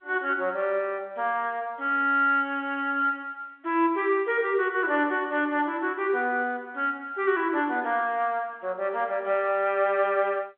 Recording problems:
phone line; 340 Hz to 3.5 kHz, G.711

